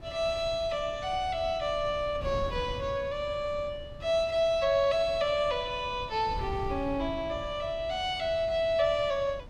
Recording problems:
wind noise; below 160 Hz, SNR 14 dB

